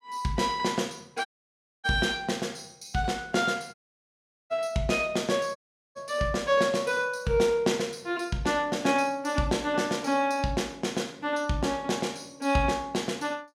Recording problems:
audio cutting out; at 1.5 s for 0.5 s, at 3.5 s for 1 s and at 5.5 s

